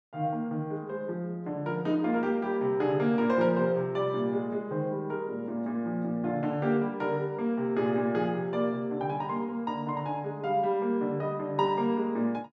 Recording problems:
none

